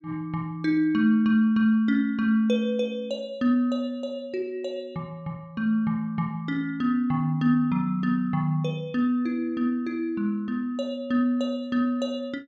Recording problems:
none

